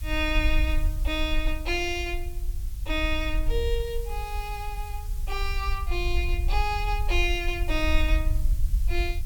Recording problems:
background hiss; slope +2 dB per octave, SNR 18 dB
rumble; below 54 Hz, SNR 1 dB

